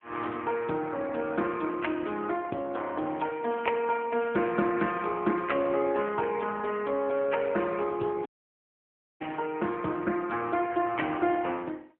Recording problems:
phone line; 220 Hz to 3.3 kHz, AMR-NB
audio cutting out; at 8.5 s for 1 s

